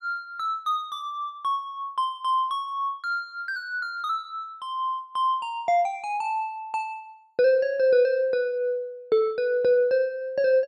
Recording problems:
none

